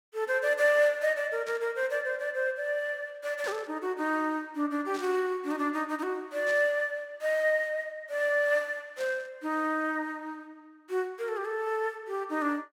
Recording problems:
burst of static; 5 times, first at 1.5 s; peak -10 dB vs average level

